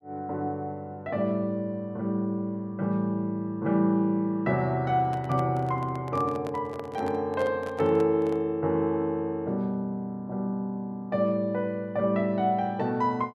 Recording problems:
microphone handling noise; from 5 to 8.5 s; peak -8 dB vs average level

